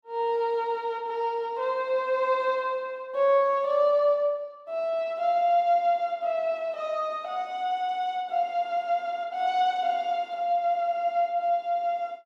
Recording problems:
none

